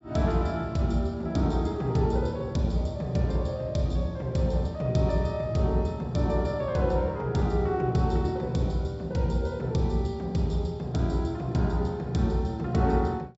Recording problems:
treble missing; nothing above 8 kHz

